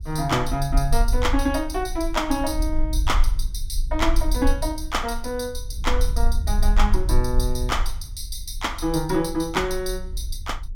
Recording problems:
rumble; below 48 Hz, SNR 2 dB

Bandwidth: 16.5 kHz